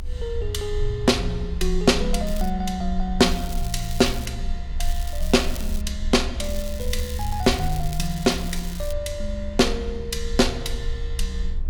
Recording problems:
low-frequency rumble; below 64 Hz, strongest tone 24 Hz, SNR 7 dB
crackling; 4 times, first at 2.5 s; loose cable, SNR 15 dB

